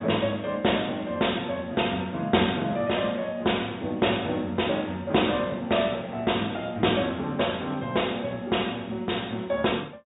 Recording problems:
treble missing; nothing above 4 kHz

